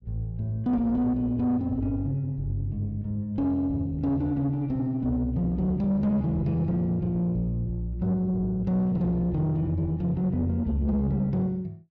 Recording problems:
distortion; soft clipping, signal-to-distortion ratio 11 dB

